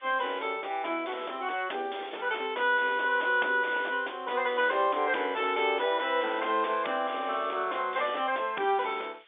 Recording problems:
phone line; 260 Hz to 3.6 kHz, G.711
distorted audio; soft clipping, signal-to-distortion ratio 6 dB
hiss; SNR 28 dB

